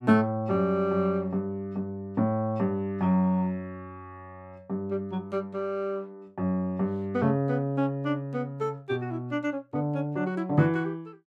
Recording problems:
none

